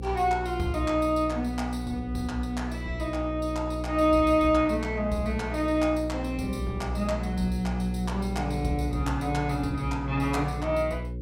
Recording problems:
hum; 60 Hz, harmonics up to 540 Hz, SNR 7 dB

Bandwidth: 16 kHz